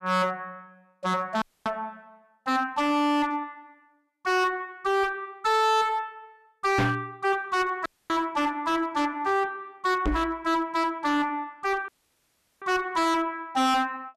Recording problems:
distorted audio; hard clipping, uneven, signal-to-distortion ratio 6 dB
audio cutting out; at 1.5 s, at 8 s and at 12 s for 0.5 s
microphone bump; at 7 s and at 10 s; peak +6 dB vs average level

